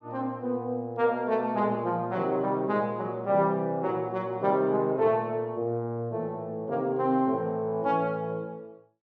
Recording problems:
none

